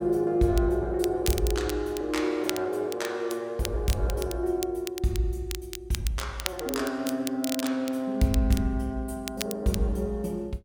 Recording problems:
crackling; vinyl, SNR 10 dB

